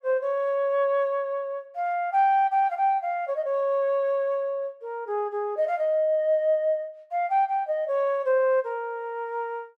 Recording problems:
none

